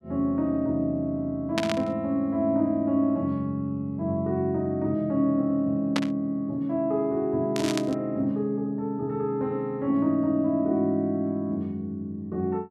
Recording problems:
static burst; at 1.5 s, at 6 s and at 7.5 s; peak +2 dB vs average level

